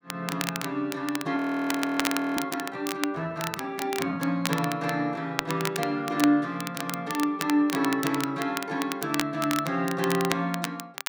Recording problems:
crackling; vinyl, SNR 7 dB
frozen audio; at 1.5 s for 1 s

